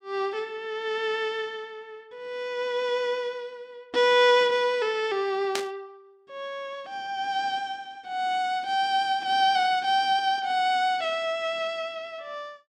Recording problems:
static burst; at 5.5 s; peak +1 dB vs average level

